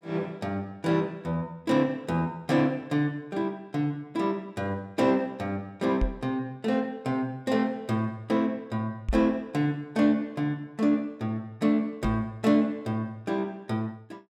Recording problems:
knock on the microphone; at 6 s, at 9 s and at 12 s; peak +3 dB vs average level

